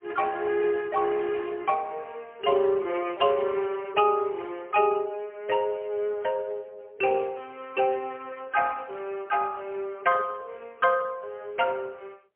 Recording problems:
phone line; 280 Hz to 3.2 kHz, AMR-NB, then MP3

